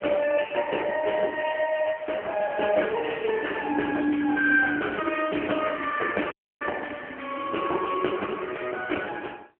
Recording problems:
telephone audio; 300 Hz to 3.1 kHz, AMR-NB
dropout; at 6.5 s

